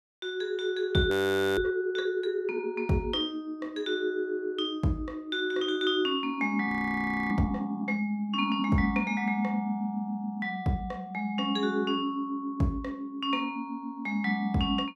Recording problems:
frozen audio; at 1 s and at 6.5 s for 0.5 s

